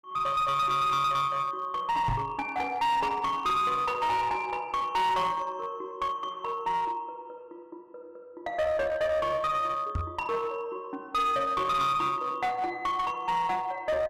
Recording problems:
distorted audio; hard clipping, uneven, signal-to-distortion ratio 10 dB
microphone thump; at 2 s and at 10 s; peak +1 dB vs average level

